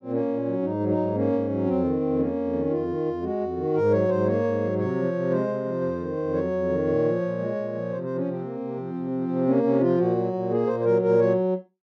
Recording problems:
none

